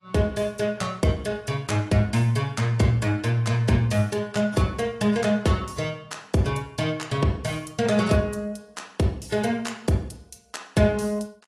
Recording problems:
lossy compression; AAC, log-spectral distance 3 dB, nothing above 12 kHz

